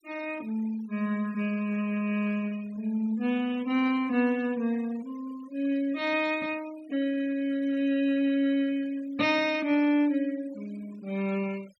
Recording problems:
denoising artefacts; signal-to-artefact ratio 21 dB

